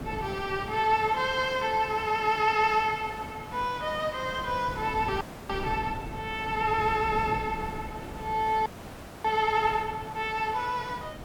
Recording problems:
hiss; slope -6 dB per octave, SNR 15 dB
wind noise; below 300 Hz, SNR 15 dB
frozen audio; at 5 s and at 8.5 s for 0.5 s

